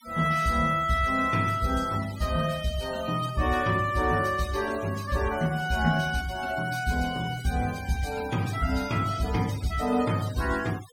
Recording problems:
denoising artefacts; signal-to-artefact ratio 16 dB

